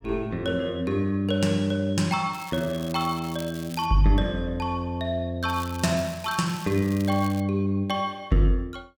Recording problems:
crackle; from 2.5 to 4 s and from 5.5 to 7.5 s; loose cable, SNR 18 dB

